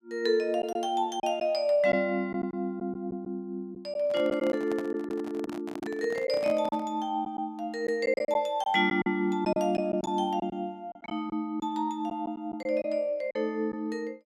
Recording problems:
packet loss; 6% of the sound replaced, filled with silence
microphone handling noise; from 4 to 7 s; peak -6 dB vs average level

